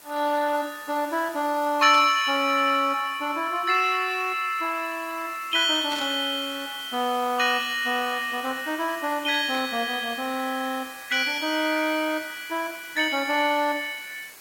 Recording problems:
lossy compression; Opus, log-spectral distance 6 dB, nothing above 16.6 kHz
hiss; slope -1 dB per octave, SNR 19 dB
burst of static; at 2 s, at 6 s and at 9.5 s; peak -8 dB vs average level

